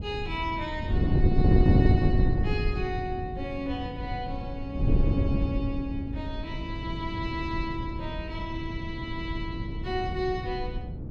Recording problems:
wind on the microphone; below 180 Hz, SNR -4 dB

